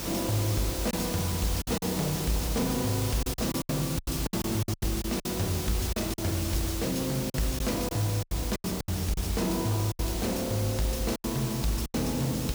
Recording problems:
distortion; soft clipping, signal-to-distortion ratio 11 dB
hum; 50 Hz, harmonics up to 450 Hz, SNR 15 dB
background hiss; slope -2 dB per octave, SNR 5 dB
packet loss; 10% of the sound replaced, filled with silence

